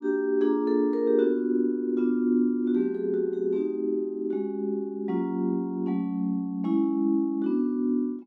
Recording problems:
none

